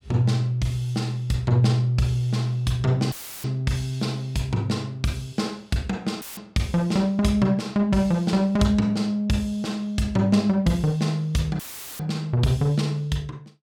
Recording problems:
audio cutting out; at 3 s, at 6 s and at 12 s; filled with static

